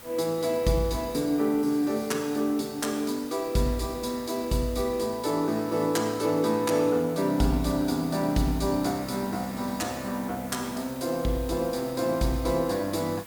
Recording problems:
background hiss; slope -3 dB per octave, SNR 18 dB

